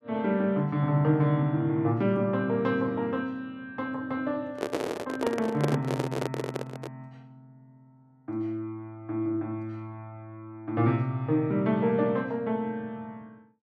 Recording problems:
handling noise; from 4.5 to 7 s; peak +3 dB vs average level

